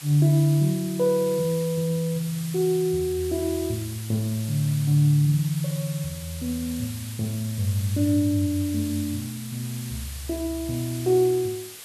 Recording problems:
hiss; slope +1 dB per octave, SNR 13 dB

